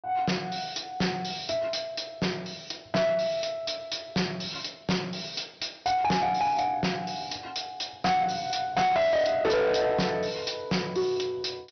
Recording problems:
low-pass filter; nothing above 6 kHz
distortion; soft clipping, signal-to-distortion ratio 6 dB

